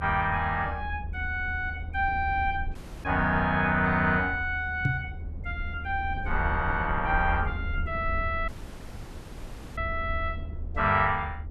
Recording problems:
low-frequency rumble; below 80 Hz, SNR 8 dB
audio cutting out; at 3 s and at 8.5 s for 1.5 s
microphone thump; at 5 s; peak +5 dB vs average level

